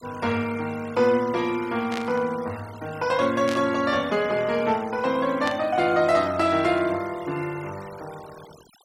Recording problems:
denoising artefacts; signal-to-artefact ratio 20 dB
static burst; at 2 s, at 3.5 s and at 5.5 s; peak -5 dB vs average level

